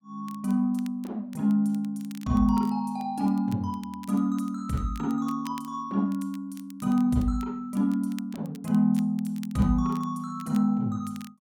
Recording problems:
crackle; vinyl, SNR 25 dB

